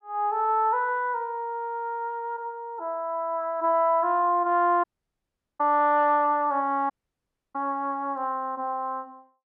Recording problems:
dropout; at 5 s for 1 s and at 7 s for 0.5 s

